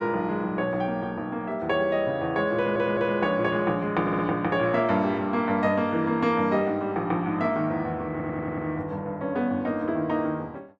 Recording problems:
stutter; at 2.5 s, at 4 s and at 8 s

